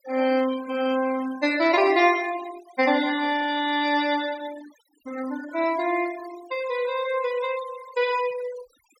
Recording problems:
noise reduction artefacts; signal-to-artefact ratio 16 dB

